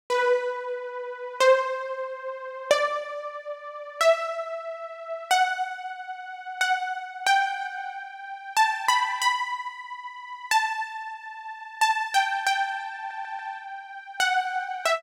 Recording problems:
stutter; at 13 s

